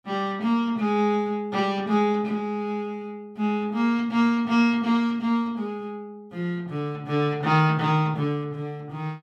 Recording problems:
none

